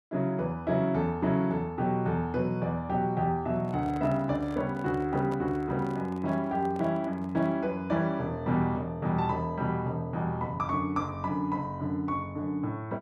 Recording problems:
microphone handling noise; from 3.5 to 7.5 s; peak -9 dB vs average level

